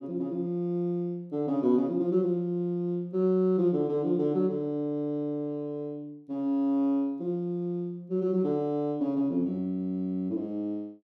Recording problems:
none

